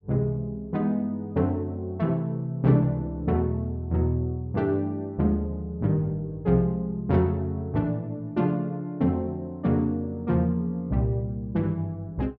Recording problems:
none

